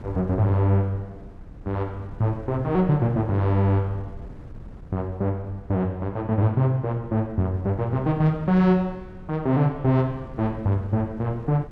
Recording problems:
wind noise; below 180 Hz, SNR 18 dB

